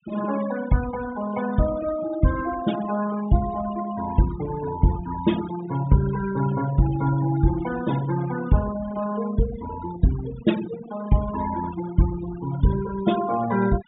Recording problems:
treble missing; nothing above 4 kHz
noise reduction artefacts; signal-to-artefact ratio 13 dB

